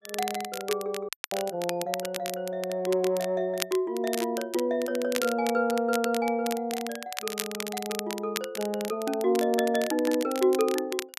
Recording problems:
crackle; vinyl, SNR 9 dB
dropout; at 1 s

